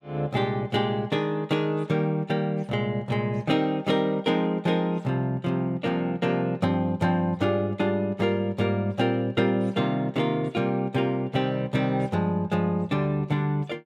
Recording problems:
none

